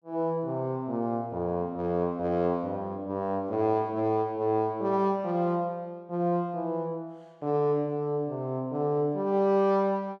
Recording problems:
none

